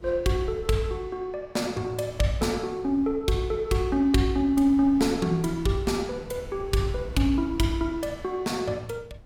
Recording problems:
wind on the microphone; below 170 Hz, SNR 19 dB

